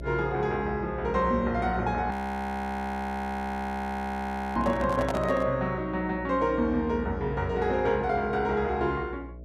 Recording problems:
hum; 60 Hz, harmonics up to 660 Hz, SNR 13 dB
audio freezing; at 2 s for 2.5 s
handling noise; at 4.5 s; peak 0 dB vs average level

